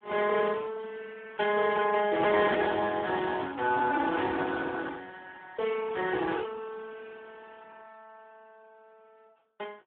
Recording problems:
phone line; 320 Hz to 2.6 kHz, Speex

